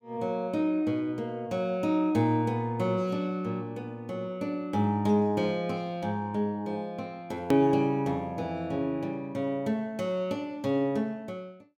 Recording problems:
click at an edit; at 7.5 s

